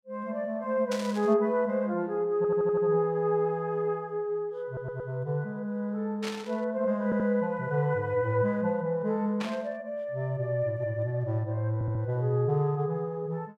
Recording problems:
static burst; at 1 s, at 6 s and at 9.5 s; peak -4 dB vs average level
stutter; 4 times, first at 2.5 s

